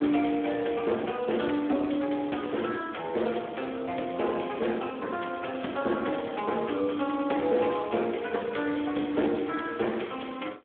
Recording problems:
phone line; 190 Hz to 3.4 kHz, Speex

